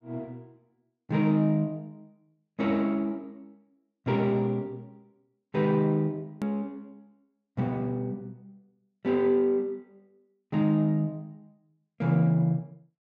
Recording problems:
treble cut off; nothing above 8 kHz
hard cut with a click; at 6.5 s

